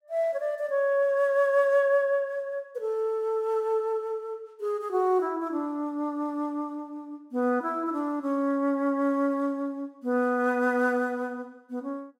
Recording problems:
none

